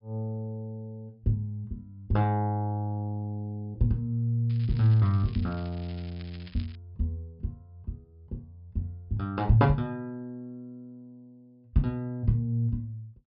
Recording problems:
treble missing; nothing above 5.5 kHz
crackle; from 4.5 to 7 s; loose cable, SNR 23 dB

